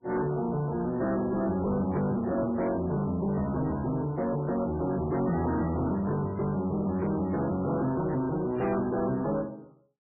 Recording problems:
lossy codec; MP3, log-spectral distance 3 dB, nothing above 2.4 kHz
distortion; soft clipping, signal-to-distortion ratio 10 dB

